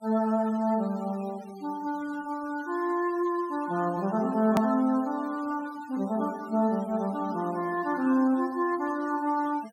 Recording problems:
noise reduction artefacts; signal-to-artefact ratio 23 dB
click at an edit; at 4.5 s

